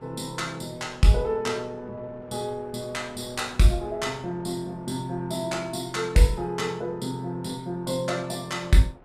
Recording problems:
wind on the microphone; below 820 Hz, SNR 24 dB

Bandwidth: 15 kHz